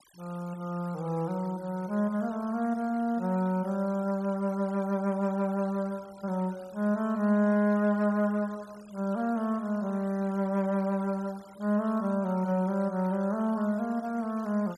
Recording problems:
noise reduction artefacts; signal-to-artefact ratio 25 dB

